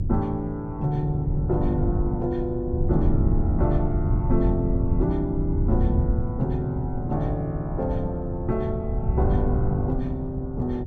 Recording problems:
hum; 60 Hz, harmonics up to 360 Hz, SNR 21 dB
wind noise; below 120 Hz, SNR 0 dB

